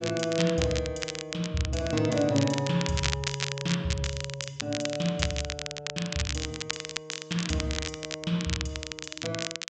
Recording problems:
low-pass filter; nothing above 8 kHz
crackling; vinyl, SNR 4 dB

